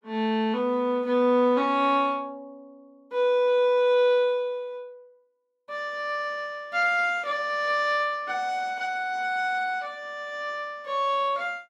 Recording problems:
none

